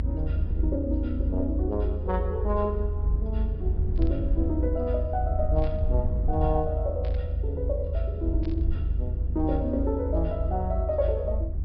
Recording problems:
treble missing; nothing above 5.5 kHz
electrical hum; 60 Hz, harmonics up to 300 Hz, SNR 21 dB
low-frequency rumble; below 78 Hz, strongest tone 52 Hz, SNR -2 dB
burst of static; 4 times, first at 4 s; peak -12 dB vs average level

